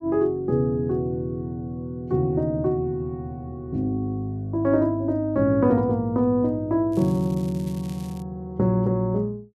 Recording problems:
crackling; from 7 to 8 s; loose cable, SNR 24 dB

